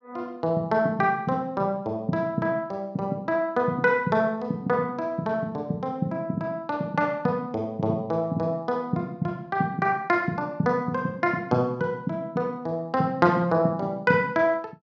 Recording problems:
none

